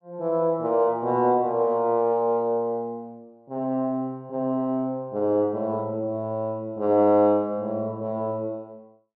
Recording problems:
none

